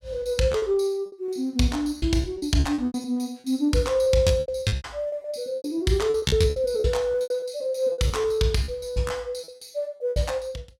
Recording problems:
lost packets; 16% of the sound replaced, filled with repeated pitch periods

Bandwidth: 16 kHz